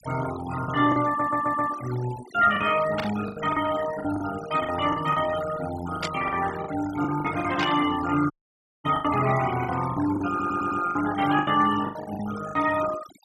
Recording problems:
denoising artefacts; signal-to-artefact ratio 12 dB
lost packets; 11% of the sound replaced, filled with the last packet
stutter; at 1 s and at 10 s
burst of static; at 3 s, at 6 s and at 7.5 s; peak 0 dB vs average level
audio cutting out; at 8.5 s for 0.5 s

